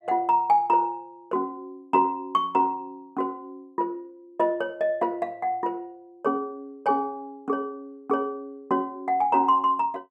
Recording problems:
none

